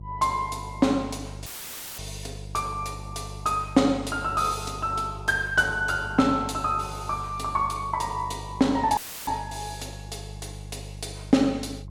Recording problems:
electrical hum; 50 Hz, harmonics up to 350 Hz, SNR 14 dB
dropout; at 1.5 s for 0.5 s and at 9 s; filled with static

